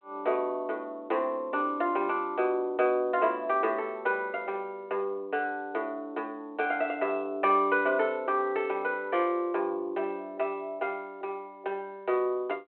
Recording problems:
phone line; 260 Hz to 3.4 kHz, G.726

